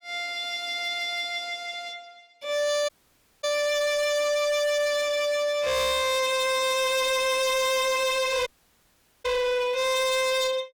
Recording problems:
distorted audio; hard clipping, signal-to-distortion ratio 8 dB
audio cutting out; at 3 s for 0.5 s and at 8.5 s for 1 s

